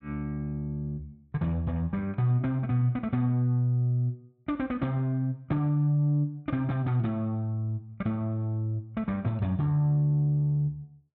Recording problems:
none

